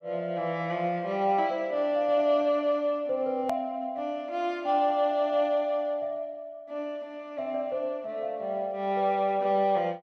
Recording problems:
click at an edit; at 3.5 s

